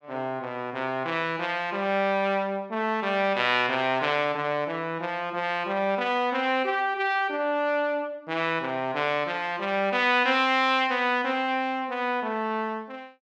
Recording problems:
none

